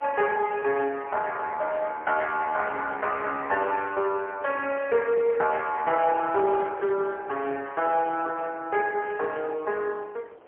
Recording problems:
phone line; 340 Hz to 3.3 kHz, AMR-NB, then MP3
wind on the microphone; below 900 Hz, SNR 21 dB

